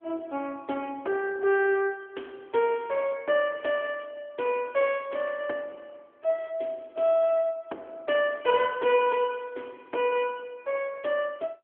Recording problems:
phone line; 280 Hz to 3.3 kHz, AMR-NB

